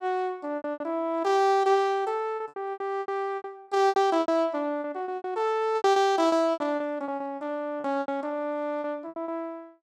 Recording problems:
lost packets; 16% of the sound replaced, filled with repeated pitch periods

